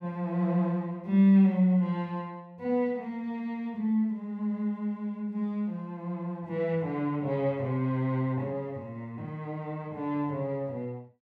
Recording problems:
none

